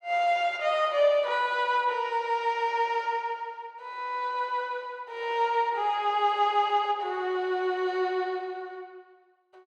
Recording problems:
none

